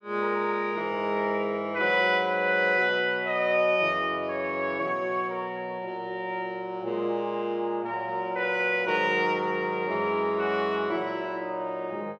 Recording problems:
none

